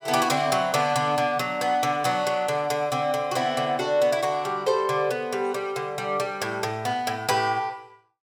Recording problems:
none

